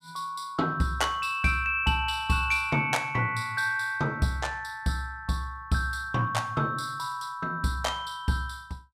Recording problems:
none

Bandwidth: 15.5 kHz